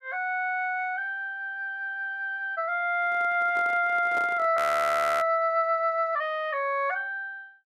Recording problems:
handling noise; from 3 to 4.5 s; peak -8 dB vs average level
frozen audio; at 4.5 s for 0.5 s

